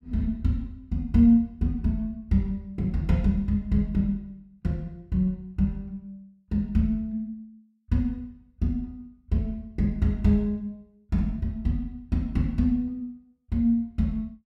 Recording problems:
none

